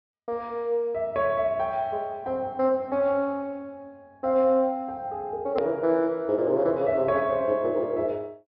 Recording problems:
treble missing; nothing above 5.5 kHz
click at an edit; at 5.5 s

